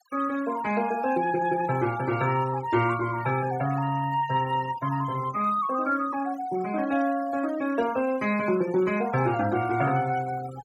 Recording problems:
noise reduction artefacts; signal-to-artefact ratio 16 dB

